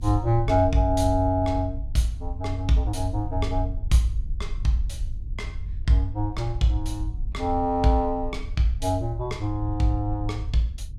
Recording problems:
low-frequency rumble; below 66 Hz, SNR 8 dB

